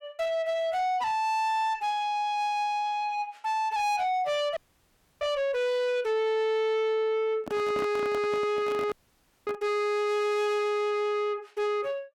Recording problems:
distorted audio; soft clipping, signal-to-distortion ratio 10 dB
audio freezing; at 4.5 s for 0.5 s and at 9 s for 0.5 s
handling noise; from 7.5 to 9.5 s; peak -3 dB vs average level

